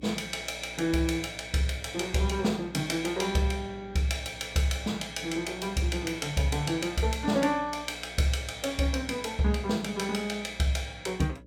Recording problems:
electrical hum; 60 Hz, harmonics up to 600 Hz, SNR 20 dB

